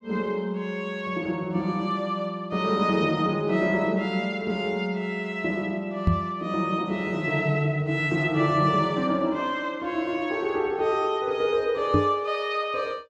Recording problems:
microphone bump; at 6 s and at 12 s; peak +7 dB vs average level

